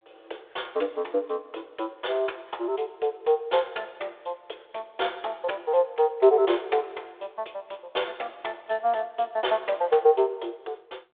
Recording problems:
phone line; 320 Hz to 3.6 kHz, G.726

